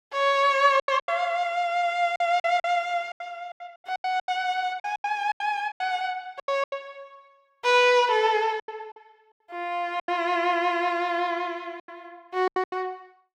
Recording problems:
lost packets; 13% of the sound replaced, filled with silence

